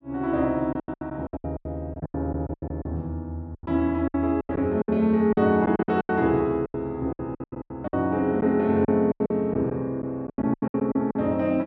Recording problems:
packet loss; 18% of the sound replaced, filled with silence

